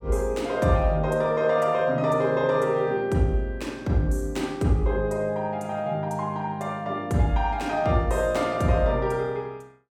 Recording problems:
none

